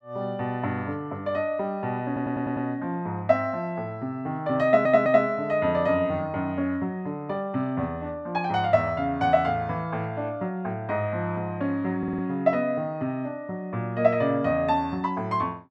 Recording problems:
audio stuttering; at 2 s, at 4.5 s and at 12 s

